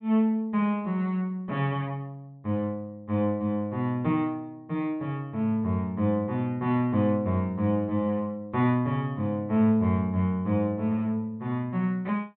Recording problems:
treble missing; nothing above 4 kHz

